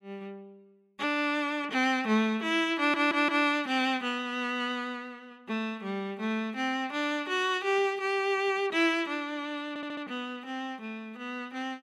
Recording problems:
stutter; at 3 s and at 9.5 s

